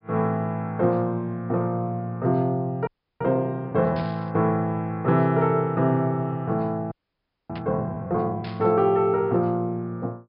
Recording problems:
low-pass filter; nothing above 5.5 kHz
frozen audio; at 3 s and at 7 s for 0.5 s
static burst; at 4 s, at 7.5 s and at 8.5 s; peak -12 dB vs average level

